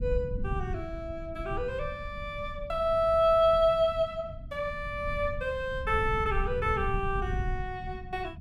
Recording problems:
rumble; below 110 Hz, SNR 9 dB

